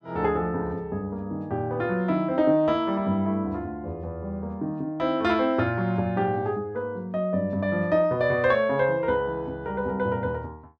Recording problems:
none

